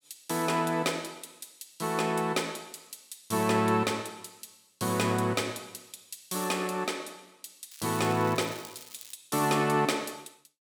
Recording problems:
crackle; from 7.5 to 9 s; loose cable, SNR 18 dB

